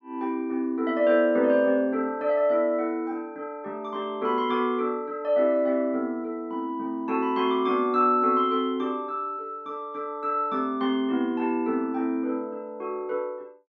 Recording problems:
none

